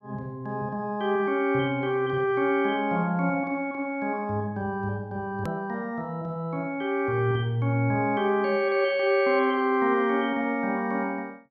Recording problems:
click at an edit; at 5.5 s

